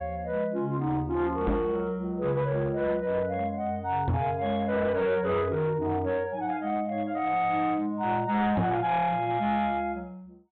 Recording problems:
low-pass filter; nothing above 4 kHz
distorted audio; hard clipping, uneven, signal-to-distortion ratio 11 dB
knock on the microphone; at 1.5 s, at 4 s and at 8.5 s; peak +4 dB vs average level

